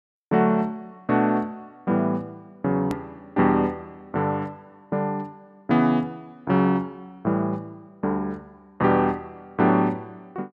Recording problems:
click at an edit; at 3 s

